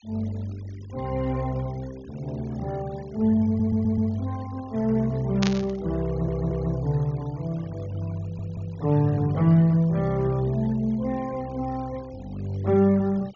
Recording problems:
treble cut off; nothing above 6.9 kHz
denoising artefacts; signal-to-artefact ratio 25 dB
audio stuttering; at 3.5 s, at 6 s and at 8 s
static burst; at 5.5 s; peak +1 dB vs average level

